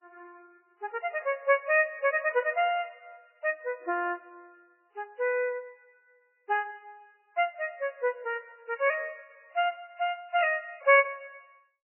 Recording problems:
codec artefacts; MP3, log-spectral distance 2 dB, nothing above 2.5 kHz

